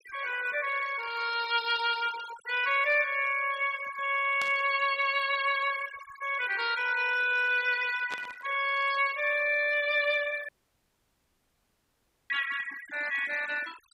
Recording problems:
denoising artefacts; signal-to-artefact ratio 16 dB
burst of static; at 4.5 s and at 8 s; peak -6 dB vs average level
audio cutting out; at 10 s for 2 s

